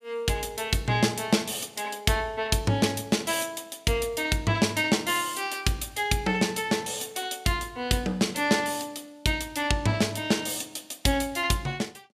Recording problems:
none

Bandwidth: 15 kHz